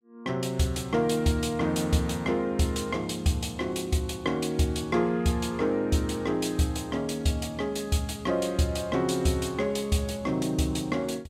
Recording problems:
none

